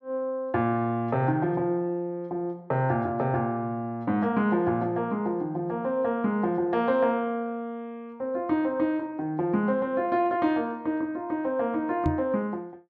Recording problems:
microphone bump; at 12 s; peak +2 dB vs average level

